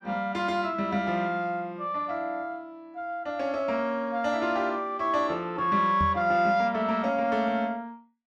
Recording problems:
knock on the microphone; at 6 s; peak -1 dB vs average level

